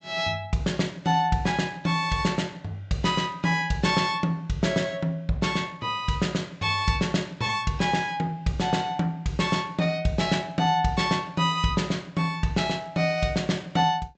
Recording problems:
treble cut off; nothing above 8 kHz

